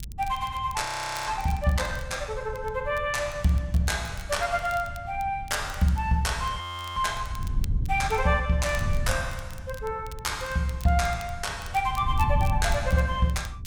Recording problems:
wind noise; below 100 Hz, SNR 8 dB
crackle; vinyl, SNR 22 dB
frozen audio; at 1 s and at 6.5 s

